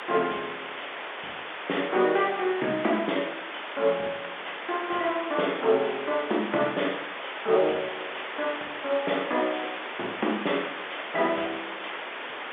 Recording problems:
phone line; 280 Hz to 3.6 kHz, G.711
background hiss; SNR 7 dB

